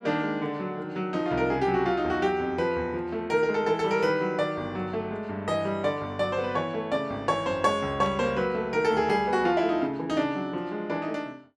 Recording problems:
burst of static; at 8 s; peak -15 dB vs average level

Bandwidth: 13.5 kHz